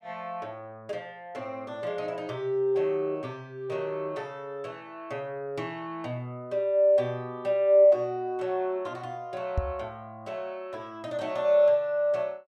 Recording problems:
microphone bump; at 9.5 s; peak +3 dB vs average level

